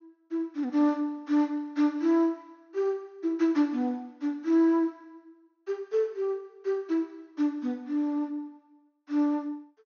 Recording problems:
treble cut off; nothing above 6.6 kHz

